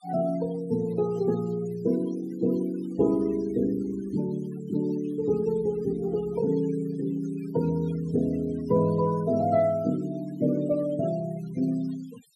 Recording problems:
noise reduction artefacts; signal-to-artefact ratio 21 dB

